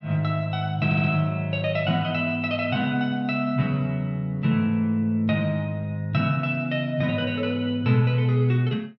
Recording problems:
stutter; at 1 s

